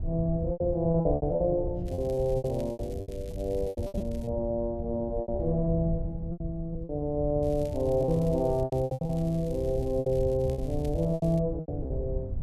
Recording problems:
wind noise; below 110 Hz, SNR 8 dB
packet loss; 13% of the sound replaced, filled with repeated pitch periods
crackling; from 2 to 4.5 s and from 7.5 to 11 s; loose cable, SNR 26 dB

